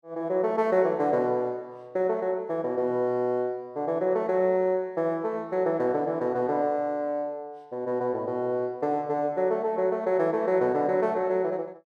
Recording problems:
none

